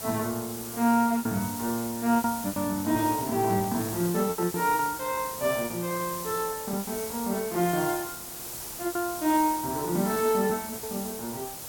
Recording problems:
hiss; SNR 8 dB
lost packets; 9% of the sound replaced, filled with repeated pitch periods
microphone handling noise; from 2.5 to 5 s; peak -12 dB vs average level

